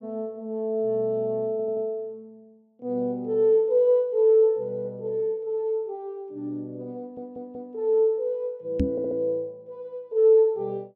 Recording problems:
stutter; at 1.5 s, at 7 s and at 9 s
knock on the microphone; at 9 s; peak +3 dB vs average level

